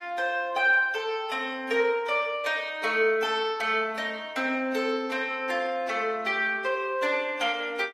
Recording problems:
lossy compression; AAC, log-spectral distance 2 dB, nothing above 12.7 kHz

